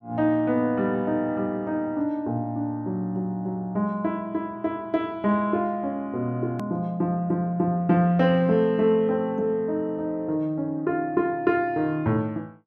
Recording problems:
edit click; at 6.5 s

